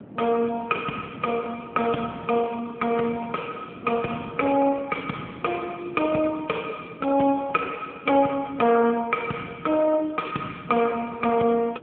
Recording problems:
phone line; 170 Hz to 3.3 kHz, AMR-NB
wind on the microphone; below 430 Hz, SNR 19 dB

